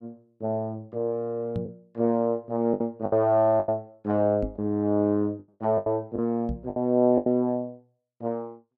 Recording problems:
lost packets; 7% of the sound replaced, filled with the last packet
microphone thump; at 1.5 s, at 4.5 s and at 6.5 s; peak -2 dB vs average level

